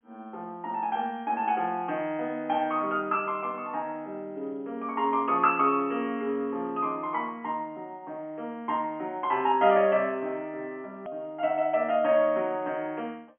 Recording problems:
phone line; 220 Hz to 3.4 kHz, G.711
edit click; at 11 s

